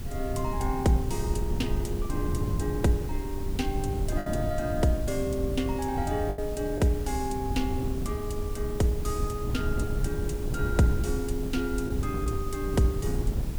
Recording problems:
background hiss; slope -2 dB per octave, SNR 16 dB
low-frequency rumble; below 60 Hz, SNR 11 dB
wind noise; below 140 Hz, SNR 3 dB
lost packets; 1.5% of the sound replaced, filled with the last packet

